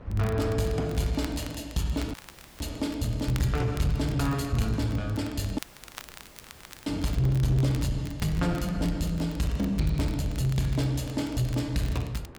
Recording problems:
distortion; soft clipping, signal-to-distortion ratio 11 dB
wind noise; below 490 Hz, SNR 24 dB
crackling; vinyl, SNR 19 dB
audio cutting out; at 2 s and at 5.5 s for 1.5 s

